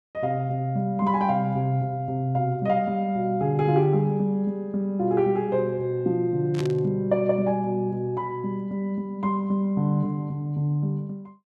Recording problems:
static burst; at 6.5 s; peak -8 dB vs average level

